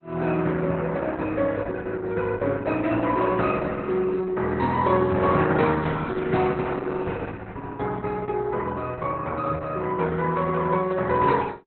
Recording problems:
codec artefacts; Opus, log-spectral distance 3 dB, nothing above 4 kHz

